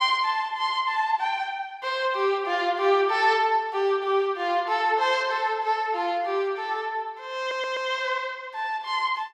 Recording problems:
audio stuttering; at 7.5 s

